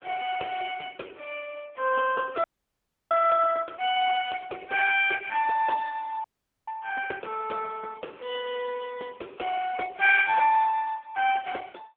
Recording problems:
telephone audio; 340 Hz to 3.1 kHz, AMR-NB
frozen audio; at 2.5 s for 0.5 s and at 6 s

